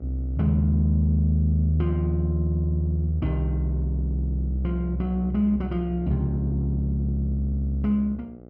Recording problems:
hum; 60 Hz, harmonics up to 840 Hz, SNR 21 dB

